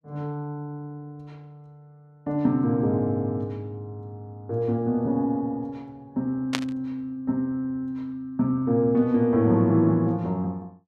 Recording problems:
burst of static; at 6.5 s; peak +3 dB vs average level

